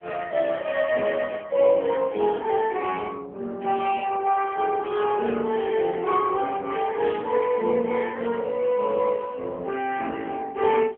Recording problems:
phone line; 190 Hz to 3.3 kHz, AMR-NB

